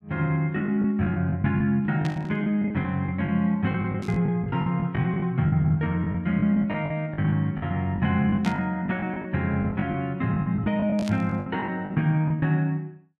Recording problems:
packet loss; 13% of the sound replaced, filled with the last packet
static burst; 4 times, first at 2 s; peak -7 dB vs average level

